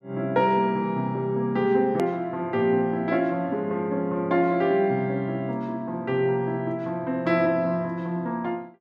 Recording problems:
hard cut with a click; at 2 s

